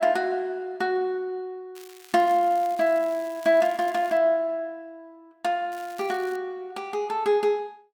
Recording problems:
crackle; from 2 to 4 s and at 5.5 s; loose cable, SNR 24 dB

